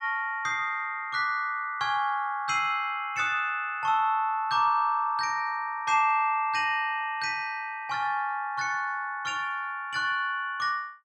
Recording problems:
none

